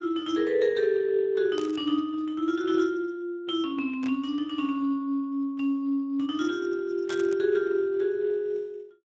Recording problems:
lossy codec; Speex, log-spectral distance 2 dB
static burst; at 1.5 s, at 4 s and at 7 s; peak -9 dB vs average level

